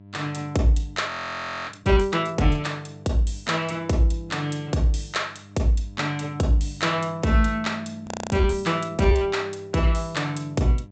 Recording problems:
low-pass filter; nothing above 8 kHz
hum; 50 Hz, harmonics up to 1 kHz, SNR 21 dB
frozen audio; at 1 s for 0.5 s and at 8 s

